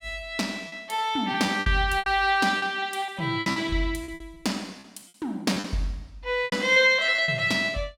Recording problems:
packet loss; 12% of the sound replaced, filled with repeated pitch periods

